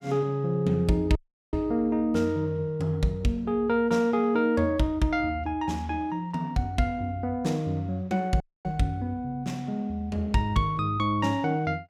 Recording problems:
audio cutting out; at 1 s and at 8.5 s

